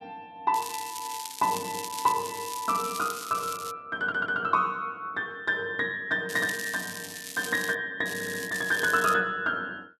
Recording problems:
crackling; from 0.5 to 3.5 s, from 6.5 to 8 s and from 8 to 9 s; loose cable, SNR 10 dB
stutter; at 4 s and at 8 s

